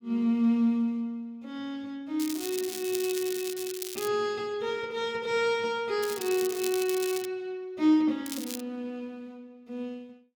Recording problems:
crackling; from 2 to 4 s, from 6 to 7.5 s and at 8.5 s; loose cable, SNR 8 dB

